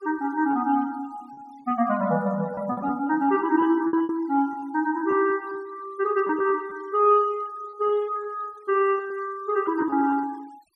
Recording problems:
denoising artefacts; signal-to-artefact ratio 26 dB
lost packets; 6% of the sound replaced, filled with repeated pitch periods

